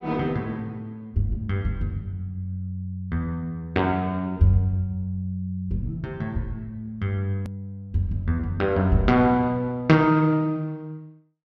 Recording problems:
hard cut with a click; at 7.5 s

